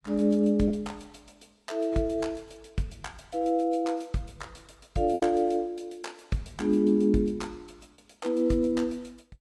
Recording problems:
lossy codec; AAC, log-spectral distance 2 dB, nothing above 11.3 kHz
packet loss; 1.4% of the sound replaced, filled with repeated pitch periods

